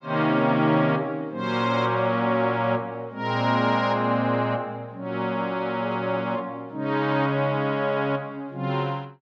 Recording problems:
none

